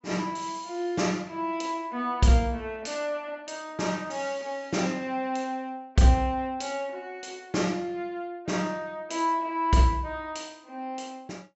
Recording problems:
low-pass filter; nothing above 7.7 kHz

